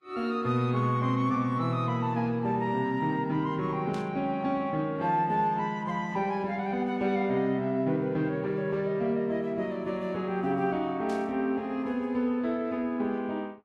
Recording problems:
lossy codec; Vorbis, log-spectral distance 2 dB, nothing above 12 kHz
burst of static; at 4 s and at 11 s; peak -13 dB vs average level

